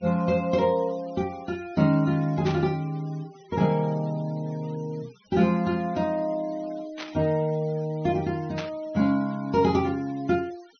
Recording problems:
treble missing; nothing above 6.3 kHz
noise reduction artefacts; signal-to-artefact ratio 24 dB
static burst; at 2.5 s, at 7 s and at 8.5 s; peak -5 dB vs average level

